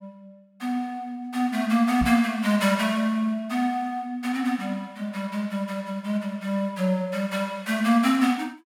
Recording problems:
knock on the microphone; at 2 s; peak -1 dB vs average level

